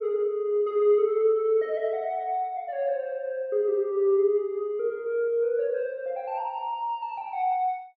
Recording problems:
none

